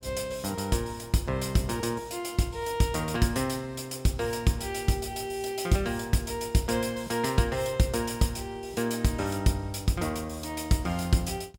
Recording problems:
none

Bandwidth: 17 kHz